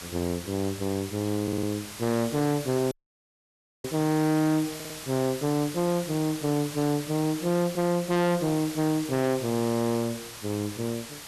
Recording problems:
distorted audio; hard clipping, uneven, signal-to-distortion ratio 7 dB
background hiss; slope 0 dB per octave, SNR 11 dB
audio stuttering; at 1.5 s and at 5 s
audio cutting out; at 3 s for 1 s

